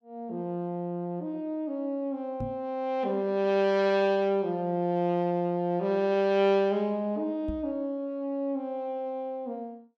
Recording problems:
microphone bump; at 2.5 s and at 7.5 s; peak -3 dB vs average level

